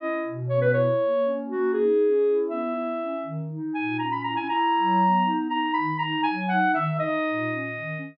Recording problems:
treble cut off; nothing above 5.5 kHz

